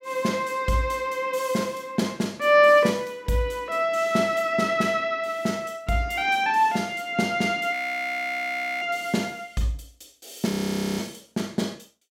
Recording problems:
frozen audio; at 7.5 s for 1 s and at 11 s

